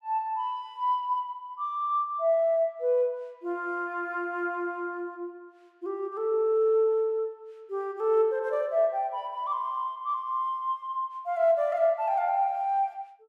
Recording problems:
none

